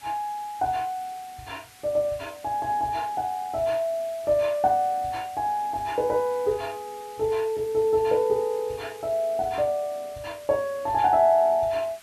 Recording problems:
hiss; SNR 23 dB

